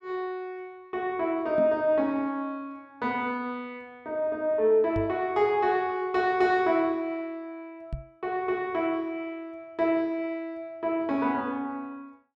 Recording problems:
microphone thump; at 1.5 s, at 5 s and at 8 s; peak -3 dB vs average level

